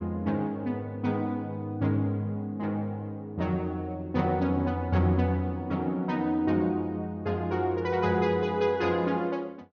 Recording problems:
low-pass filter; nothing above 6.5 kHz

